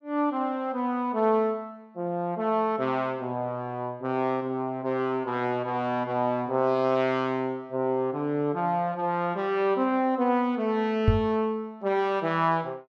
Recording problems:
microphone bump; at 11 s; peak +9 dB vs average level

